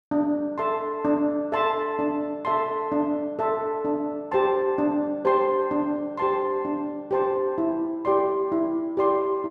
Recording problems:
none

